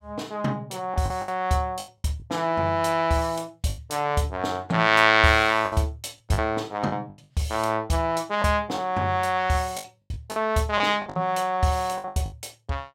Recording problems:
lost packets; 9% of the sound replaced, filled with the last packet

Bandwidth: 16 kHz